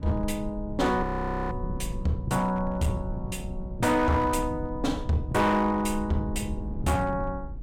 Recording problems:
distortion; hard clipping, signal-to-distortion ratio 11 dB
wind noise; below 120 Hz, SNR 10 dB
frozen audio; at 1 s

